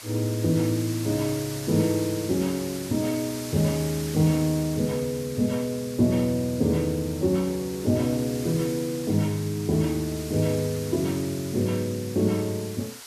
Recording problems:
hiss; slope +1 dB per octave, SNR 13 dB

